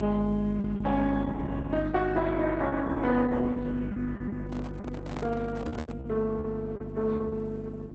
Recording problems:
lossy codec; Opus, log-spectral distance 3 dB
hum; 50 Hz, harmonics up to 400 Hz, SNR 8 dB
packet loss; 10% of the sound replaced, filled with repeated pitch periods
microphone handling noise; from 4.5 to 6 s; peak -3 dB vs average level

